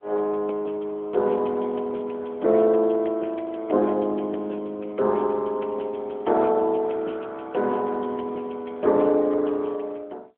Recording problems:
phone line; 240 Hz to 3.4 kHz, AMR-NB

